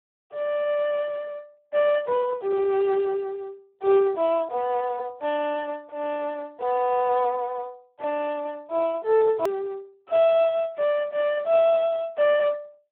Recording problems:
phone line; 320 Hz to 3.5 kHz, Speex
hard cut with a click; at 9.5 s

